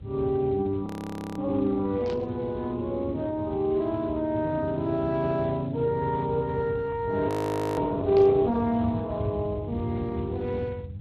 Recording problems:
lossy compression; Speex, log-spectral distance 3 dB, nothing above 13.1 kHz
electrical hum; 50 Hz, harmonics up to 500 Hz, SNR 19 dB
low-frequency rumble; below 140 Hz, SNR 12 dB
frozen audio; at 1 s for 0.5 s and at 7.5 s
burst of static; at 2 s and at 8 s; peak -12 dB vs average level

